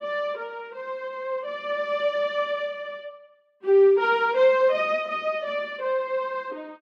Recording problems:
none

